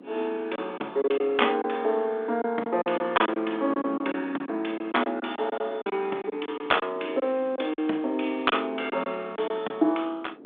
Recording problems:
telephone audio; 240 Hz to 3.6 kHz, G.726
wind noise; below 460 Hz, SNR 19 dB
packet loss; 9% of the sound replaced, filled with silence

